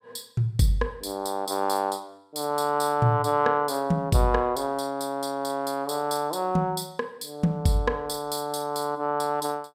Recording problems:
none

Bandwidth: 16.5 kHz